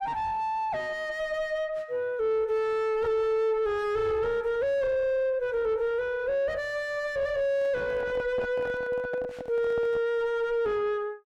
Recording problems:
distorted audio; soft clipping, signal-to-distortion ratio 7 dB
microphone handling noise; from 7.5 to 10 s; peak -3 dB vs average level

